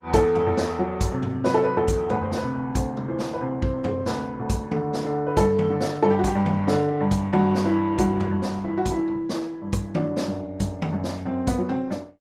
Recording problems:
lossy compression; Opus, log-spectral distance 3 dB, nothing above 18.3 kHz

